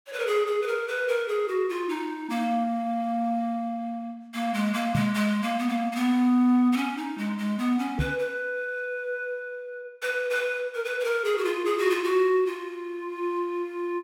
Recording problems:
microphone thump; at 5 s and at 8 s; peak +3 dB vs average level

